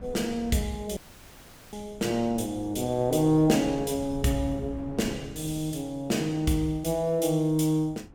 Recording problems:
wind noise; below 210 Hz, SNR 18 dB
audio cutting out; at 1 s for 1 s

